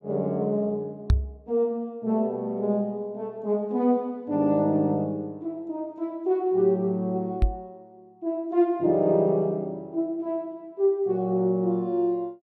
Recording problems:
knock on the microphone; at 1 s and at 7.5 s; peak +8 dB vs average level

